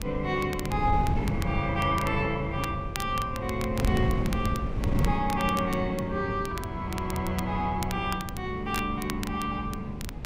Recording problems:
wind noise; below 190 Hz, SNR 4 dB
crackling; vinyl, SNR 13 dB

